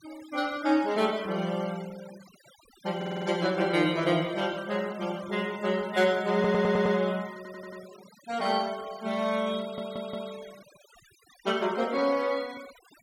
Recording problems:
noise reduction artefacts; signal-to-artefact ratio 19 dB
audio stuttering; 4 times, first at 3 s

